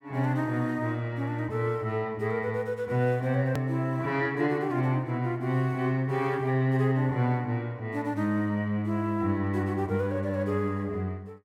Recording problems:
edit click; at 3.5 s

